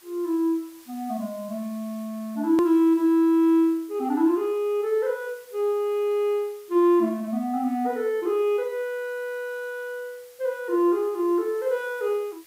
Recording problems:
hiss; slope +1 dB per octave, SNR 27 dB
edit click; at 2.5 s

